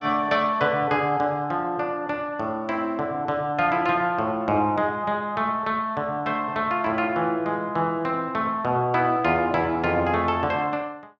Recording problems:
none

